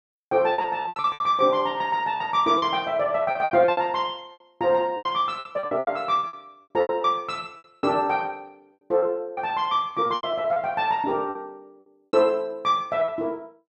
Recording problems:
lost packets; 14% of the sound replaced, filled with repeated pitch periods

